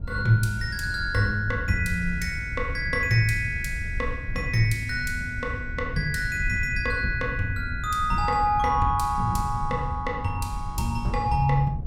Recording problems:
wind on the microphone; below 100 Hz, SNR 8 dB

